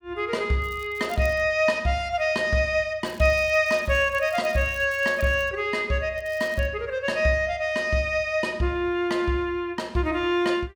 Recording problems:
crackling; at 0.5 s, from 3 to 5.5 s and at 6 s; loose cable, SNR 25 dB

